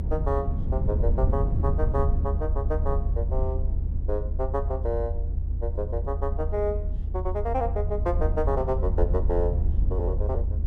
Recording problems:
rumble; below 76 Hz, SNR -3 dB

